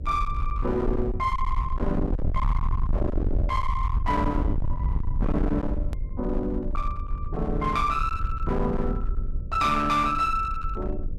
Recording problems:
distortion; hard clipping, uneven, signal-to-distortion ratio 5 dB
electrical hum; 50 Hz, harmonics up to 600 Hz, SNR 20 dB
low-frequency rumble; below 78 Hz, SNR 3 dB
click at an edit; at 6 s

